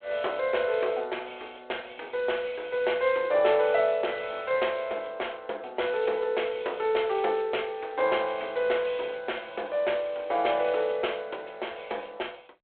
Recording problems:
phone line; 340 Hz to 3.4 kHz, G.726

